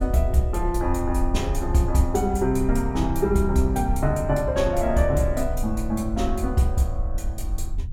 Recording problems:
rumble; below 66 Hz, SNR 6 dB

